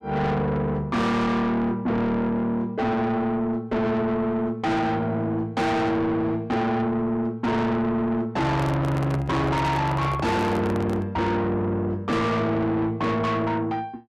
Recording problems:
distortion; soft clipping, signal-to-distortion ratio 6 dB
handling noise; from 8.5 to 11 s; peak 0 dB vs average level

